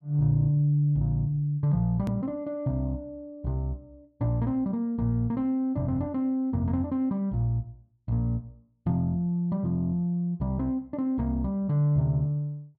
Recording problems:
hard cut with a click; at 2 s

